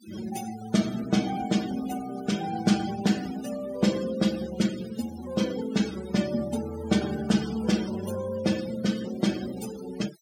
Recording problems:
noise reduction artefacts; signal-to-artefact ratio 13 dB

